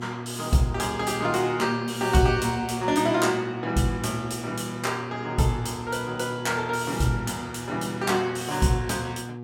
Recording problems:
electrical hum; 60 Hz, harmonics up to 840 Hz, SNR 10 dB

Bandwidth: 17.5 kHz